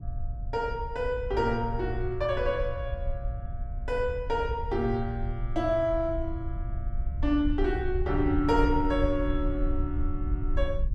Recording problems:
rumble; below 68 Hz, SNR 5 dB

